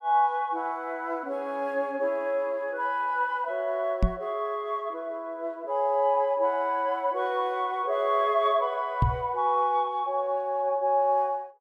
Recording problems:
microphone bump; at 4 s and at 9 s; peak +6 dB vs average level

